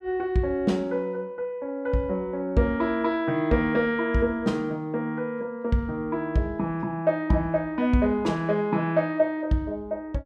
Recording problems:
none

